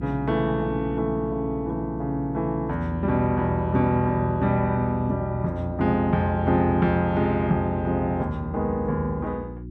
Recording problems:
electrical hum; 60 Hz, harmonics up to 360 Hz, SNR 12 dB

